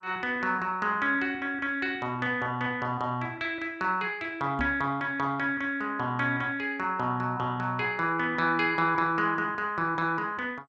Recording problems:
codec artefacts; MP2, log-spectral distance 2 dB
microphone thump; at 4.5 s; peak -1 dB vs average level

